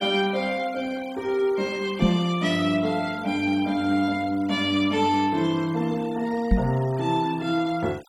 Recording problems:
denoising artefacts; signal-to-artefact ratio 21 dB
microphone thump; at 2 s and at 6.5 s; peak +7 dB vs average level

